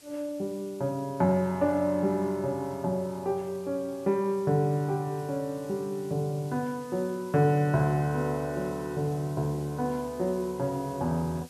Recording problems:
background hiss; SNR 23 dB

